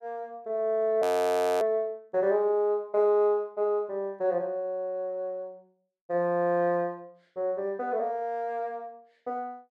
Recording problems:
frozen audio; at 1 s for 0.5 s

